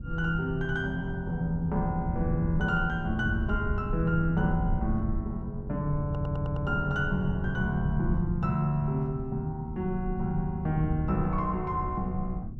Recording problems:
rumble; below 130 Hz, SNR 5 dB
audio stuttering; at 6 s

